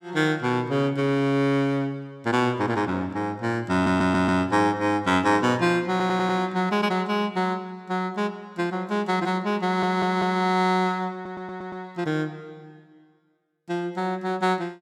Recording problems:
audio stuttering; 4 times, first at 3.5 s

